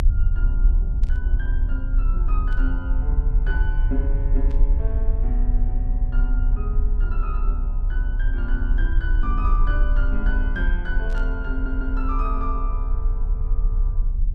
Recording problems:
rumble; below 46 Hz, strongest tone 32 Hz, SNR -9 dB
static burst; 4 times, first at 1 s; peak -11 dB vs average level
stutter; at 12 s

